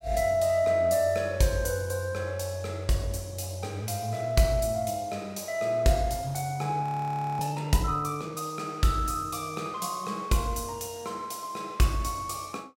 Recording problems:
audio freezing; at 7 s for 0.5 s

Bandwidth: 16.5 kHz